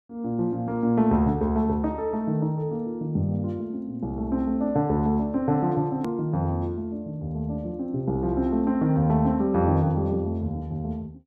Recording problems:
hard cut with a click; at 6 s

